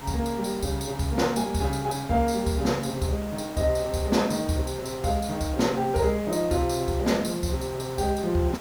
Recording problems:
background hiss; SNR 14 dB

